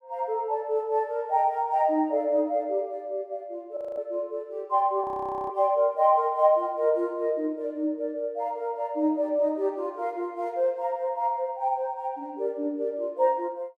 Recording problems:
audio freezing; at 4 s and at 5 s

